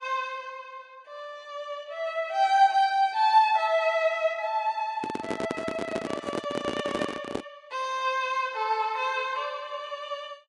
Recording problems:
lossy codec; Vorbis, log-spectral distance 2 dB
handling noise; from 5 to 7.5 s; peak 0 dB vs average level

